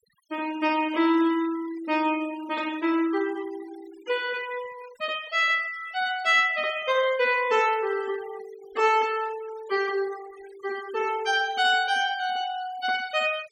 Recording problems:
denoising artefacts; signal-to-artefact ratio 20 dB

